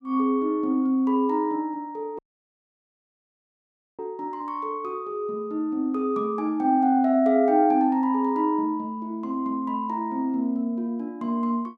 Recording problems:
audio cutting out; at 2 s for 2 s

